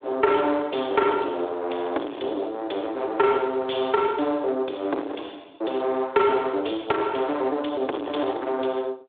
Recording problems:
phone line; 260 Hz to 3.6 kHz, Speex
distortion; soft clipping, signal-to-distortion ratio 6 dB

